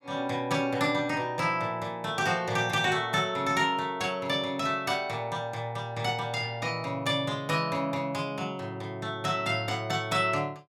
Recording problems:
none

